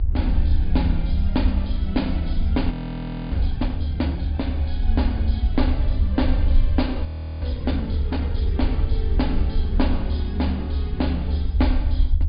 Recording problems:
low-pass filter; nothing above 4.9 kHz
rumble; below 74 Hz, SNR -4 dB
wind noise; below 180 Hz, SNR 17 dB
audio freezing; at 2.5 s for 0.5 s and at 7 s

